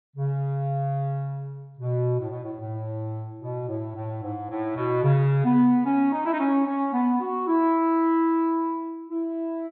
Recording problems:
treble cut off; nothing above 4.3 kHz

